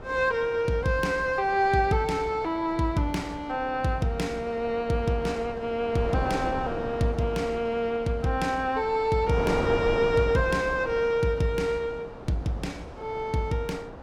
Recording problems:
wind on the microphone; below 780 Hz, SNR 11 dB

